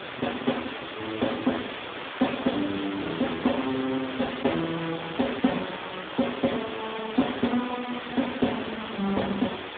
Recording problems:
phone line; 170 Hz to 3.6 kHz, Speex
hiss; SNR 7 dB

